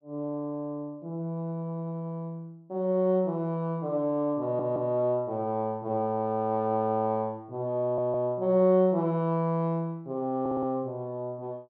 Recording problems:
audio stuttering; at 4.5 s, at 8 s and at 10 s

